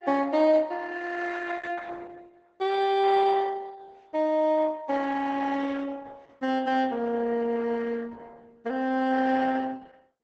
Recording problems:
lossy codec; Opus, log-spectral distance 4 dB, nothing above 8 kHz

